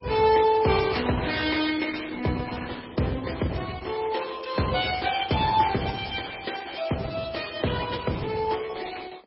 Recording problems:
lossy compression; Opus, then MP3, log-spectral distance 7 dB, nothing above 5.2 kHz

